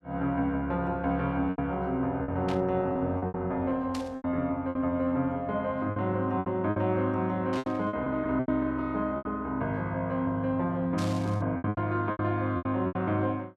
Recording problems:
packet loss; 10% of the sound replaced, filled with repeated pitch periods
static burst; 4 times, first at 2.5 s; peak -6 dB vs average level

